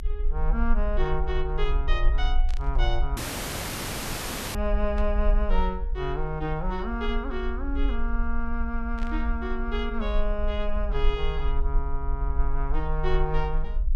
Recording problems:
rumble; below 46 Hz, strongest tone 22 Hz, SNR -1 dB
burst of static; at 2.5 s, at 5 s and at 9 s; peak -9 dB vs average level
dropout; at 3 s for 1.5 s

